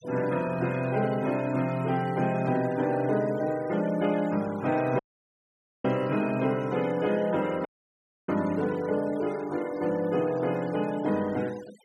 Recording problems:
noise reduction artefacts; signal-to-artefact ratio 19 dB
audio cutting out; at 5 s for 1 s and at 7.5 s for 0.5 s

